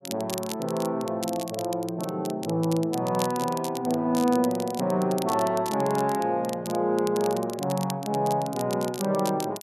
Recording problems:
crackle; vinyl, SNR 13 dB

